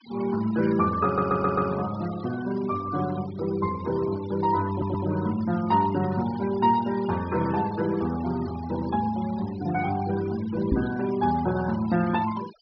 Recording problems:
low-pass filter; nothing above 5.5 kHz
denoising artefacts; signal-to-artefact ratio 17 dB
stutter; at 1 s and at 4.5 s
microphone bump; at 11 s; peak +4 dB vs average level

